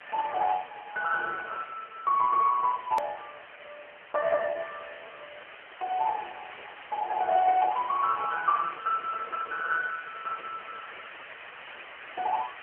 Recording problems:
telephone audio; 370 Hz to 2.6 kHz, AMR-NB
hiss; SNR 16 dB
edit click; at 3 s

